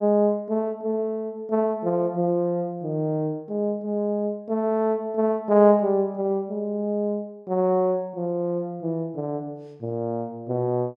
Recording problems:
none

